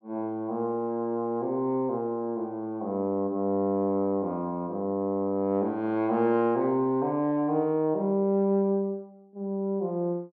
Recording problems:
none

